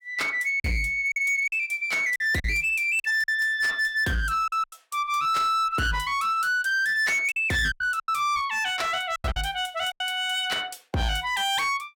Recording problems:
distorted audio; hard clipping, signal-to-distortion ratio 11 dB
lost packets; 7% of the sound replaced, filled with silence

